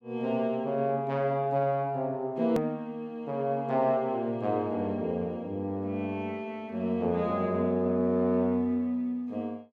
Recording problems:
hard cut with a click; at 2.5 s

